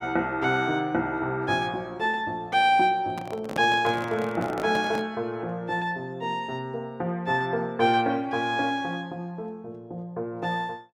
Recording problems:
handling noise; from 3 to 5 s; peak -3 dB vs average level

